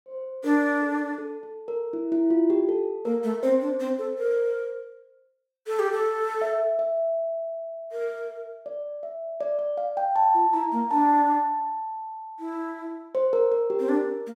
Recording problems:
none

